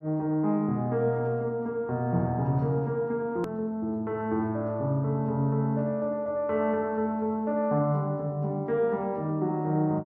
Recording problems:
click at an edit; at 3.5 s

